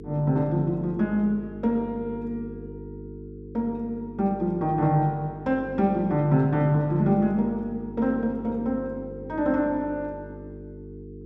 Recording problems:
hum; 50 Hz, harmonics up to 450 Hz, SNR 14 dB

